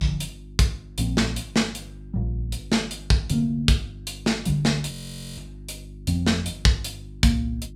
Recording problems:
hum; 50 Hz, harmonics up to 350 Hz, SNR 18 dB
frozen audio; at 5 s

